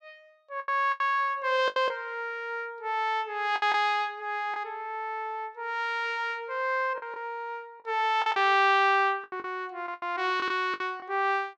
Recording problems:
lost packets; 8% of the sound replaced, filled with the last packet

